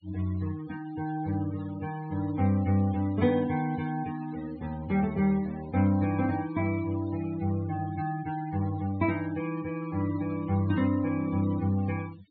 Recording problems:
treble cut off; nothing above 4.3 kHz
noise reduction artefacts; signal-to-artefact ratio 19 dB

